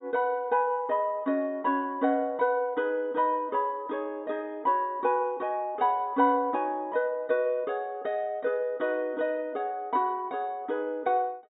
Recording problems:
treble missing; nothing above 4 kHz

